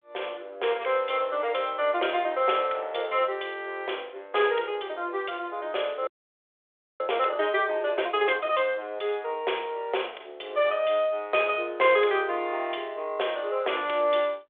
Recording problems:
telephone audio; 320 Hz to 3.6 kHz, G.726
frozen audio; at 6 s for 1 s

